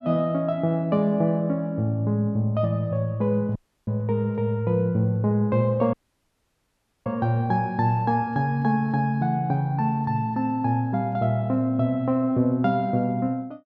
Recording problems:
dropout; at 3.5 s and at 6 s for 1 s

